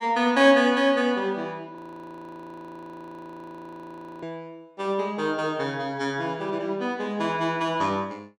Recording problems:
frozen audio; at 2 s for 2.5 s

